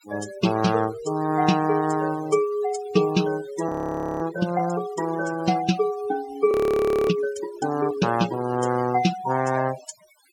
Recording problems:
denoising artefacts; signal-to-artefact ratio 15 dB
frozen audio; at 3.5 s for 0.5 s and at 6.5 s for 0.5 s

